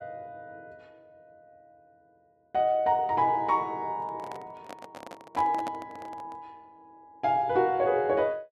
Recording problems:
microphone handling noise; from 4 to 6.5 s; peak -7 dB vs average level

